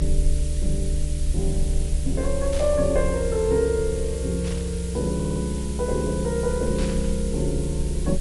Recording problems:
lossy compression; MP3, log-spectral distance 8 dB
hiss; SNR 12 dB
rumble; below 66 Hz, SNR 3 dB
static burst; at 2.5 s, at 4.5 s and at 7 s; peak -8 dB vs average level
audio stuttering; at 5 s

